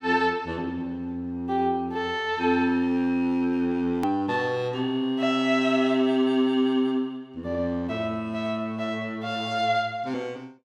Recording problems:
hard cut with a click; at 4 s

